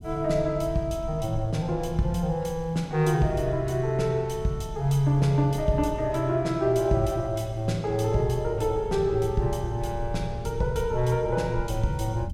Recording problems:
low-frequency rumble; below 110 Hz, SNR 13 dB

